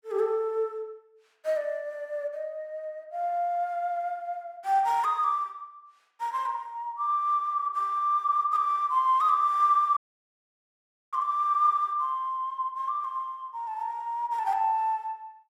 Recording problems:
audio cutting out; at 10 s for 1 s

